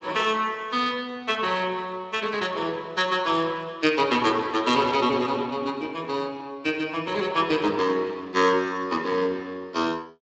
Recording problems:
codec artefacts; Speex, log-spectral distance 4 dB, nothing above 7.6 kHz

